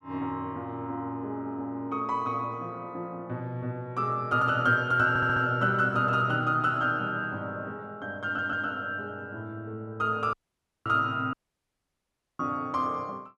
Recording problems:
audio stuttering; at 5 s and at 8.5 s
dropout; at 10 s for 0.5 s and at 11 s for 1 s

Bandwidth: 12.5 kHz